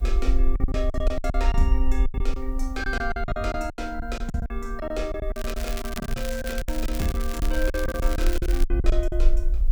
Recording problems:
hum; 60 Hz, harmonics up to 720 Hz, SNR 26 dB
hiss; slope -6 dB per octave, SNR 30 dB
low-frequency rumble; below 48 Hz, strongest tone 22 Hz, SNR -2 dB
lost packets; 16% of the sound replaced, filled with silence
crackling; from 5.5 to 8.5 s; loose cable, SNR 8 dB

